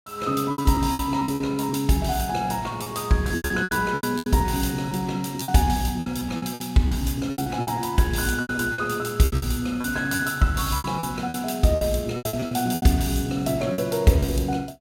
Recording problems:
packet loss; 15% of the sound replaced, filled with repeated pitch periods

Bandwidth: 17.5 kHz